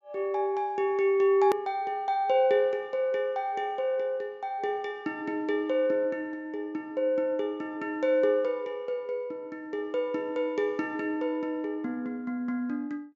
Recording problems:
treble cut off; nothing above 7.4 kHz
hard cut with a click; at 1.5 s

